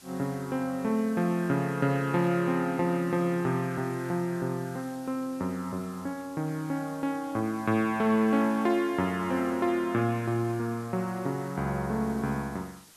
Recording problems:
background hiss; slope 0 dB per octave, SNR 23 dB

